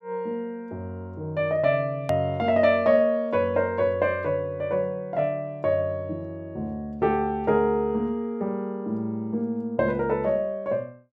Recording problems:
click at an edit; at 2 s

